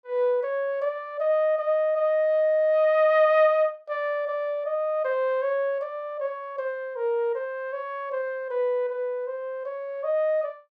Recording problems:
none

